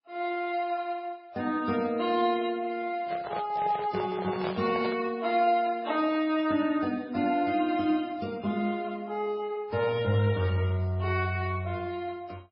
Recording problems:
lossy codec; Vorbis, then MP3, log-spectral distance 2 dB
microphone handling noise; from 3 to 5 s; peak -1 dB vs average level

